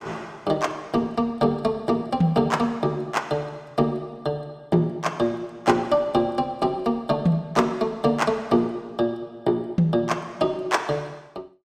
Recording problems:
none

